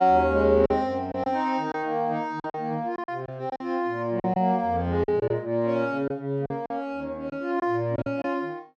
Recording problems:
lost packets; 8% of the sound replaced, filled with silence

